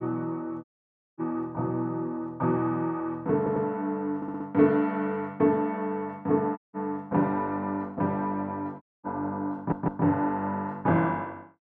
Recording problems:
audio cutting out; at 0.5 s for 0.5 s, at 6.5 s and at 9 s
audio stuttering; at 3.5 s, at 4 s and at 9.5 s

